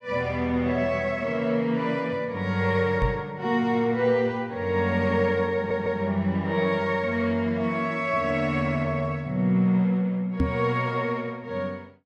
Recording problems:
microphone thump; at 3 s and at 10 s; peak +4 dB vs average level
audio stuttering; at 5.5 s

